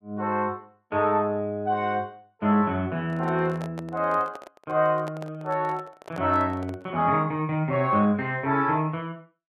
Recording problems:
microphone handling noise; from 3 to 7 s; peak -8 dB vs average level

